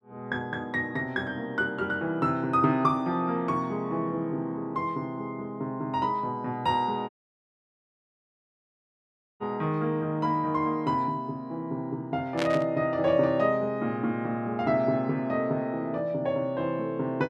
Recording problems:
audio cutting out; at 7 s for 2.5 s
static burst; at 12 s; peak 0 dB vs average level

